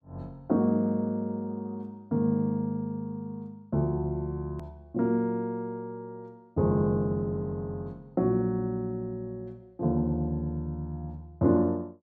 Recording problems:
hard cut with a click; at 4.5 s

